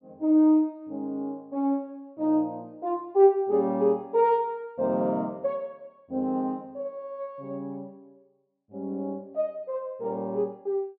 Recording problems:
low-pass filter; nothing above 5.5 kHz

